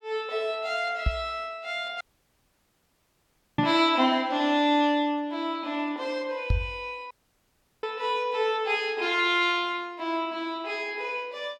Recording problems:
microphone thump; at 1 s, at 3.5 s and at 6.5 s; peak +5 dB vs average level
audio cutting out; at 2 s for 1.5 s and at 7 s for 0.5 s

